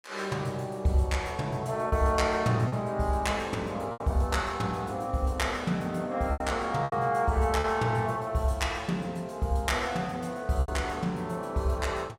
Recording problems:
lost packets; 4% of the sound replaced, filled with repeated pitch periods

